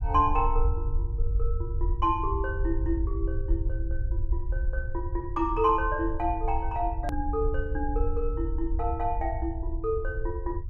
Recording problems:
low-frequency rumble; below 66 Hz, SNR 2 dB
edit click; at 7 s

